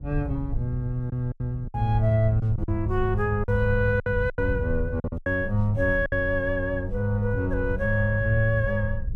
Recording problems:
low-frequency rumble; below 88 Hz, SNR 8 dB
packet loss; 7% of the sound replaced, filled with silence

